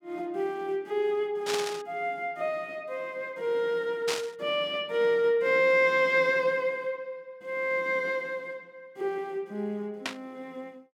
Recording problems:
burst of static; at 1.5 s, at 4 s and at 10 s; peak +1 dB vs average level

